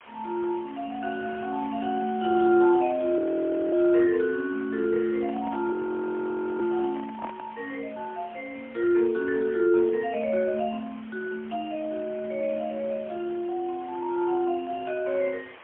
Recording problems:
telephone audio; 240 Hz to 3.4 kHz, AMR-NB, then MP3
hiss; SNR 22 dB
audio freezing; at 3 s for 0.5 s and at 5.5 s for 1 s
handling noise; from 5 to 7.5 s; peak -6 dB vs average level

